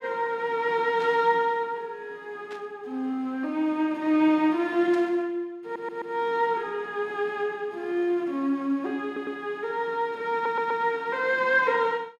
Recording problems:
burst of static; at 1 s, at 2.5 s and at 5 s; peak -14 dB vs average level
stutter; at 5.5 s, at 9 s and at 10 s

